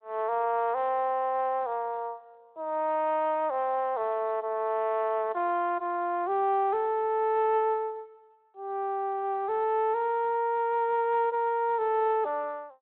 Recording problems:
phone line; 340 Hz to 3.5 kHz, Speex

